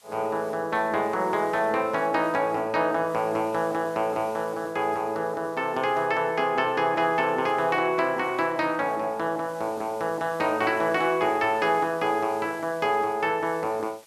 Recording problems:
hiss; slope +2 dB per octave, SNR 26 dB

